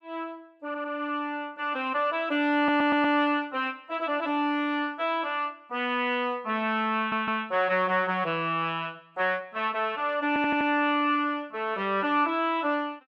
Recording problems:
audio stuttering; 4 times, first at 0.5 s

